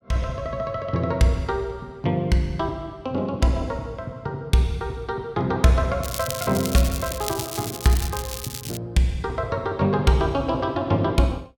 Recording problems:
crackle; from 6 to 9 s; loose cable, SNR 8 dB

